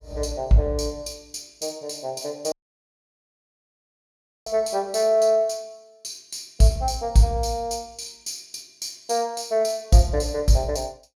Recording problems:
dropout; at 2.5 s for 2 s

